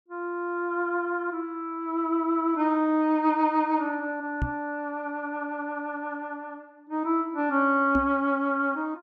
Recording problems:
microphone thump; at 4.5 s and at 8 s; peak +2 dB vs average level

